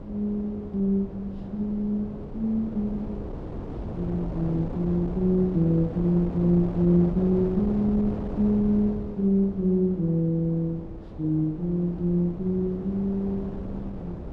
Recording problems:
wind noise; below 380 Hz, SNR 10 dB

